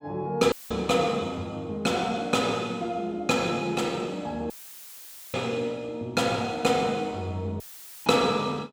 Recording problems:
audio cutting out; at 0.5 s, at 4.5 s for 1 s and at 7.5 s; filled with static

